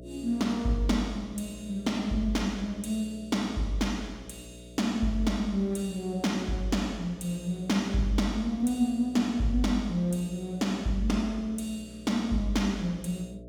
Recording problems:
electrical hum; 60 Hz, harmonics up to 660 Hz, SNR 18 dB

